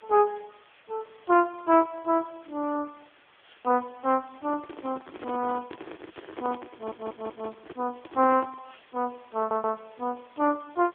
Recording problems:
telephone audio; 260 Hz to 3.3 kHz, AMR-NB
background hiss; SNR 28 dB
microphone handling noise; from 4.5 to 8.5 s; peak -3 dB vs average level
stutter; at 6.5 s and at 9.5 s

